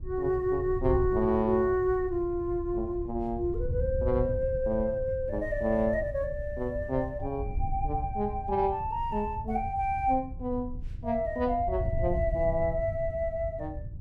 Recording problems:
wind noise; below 98 Hz, SNR 8 dB

